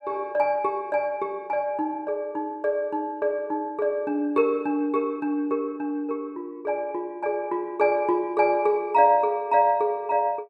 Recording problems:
none

